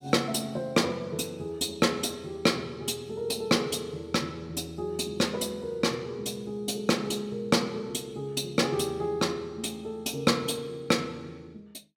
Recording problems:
none

